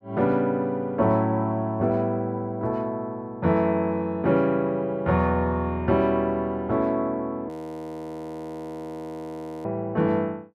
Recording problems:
frozen audio; at 7.5 s for 2 s

